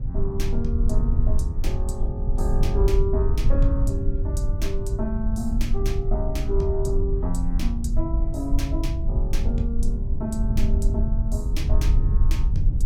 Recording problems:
low-frequency rumble; below 64 Hz, SNR -5 dB

